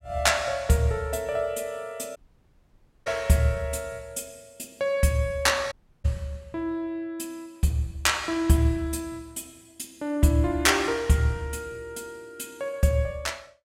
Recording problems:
audio cutting out; at 2 s for 1 s and at 5.5 s

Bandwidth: 16 kHz